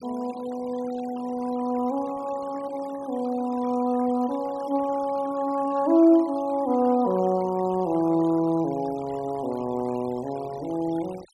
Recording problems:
noise reduction artefacts; signal-to-artefact ratio 20 dB

